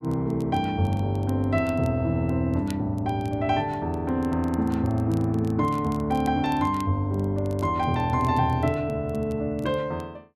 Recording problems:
crackle; vinyl, SNR 27 dB

